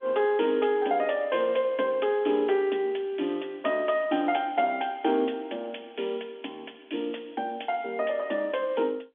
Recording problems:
telephone audio; 240 Hz to 3.5 kHz, G.711

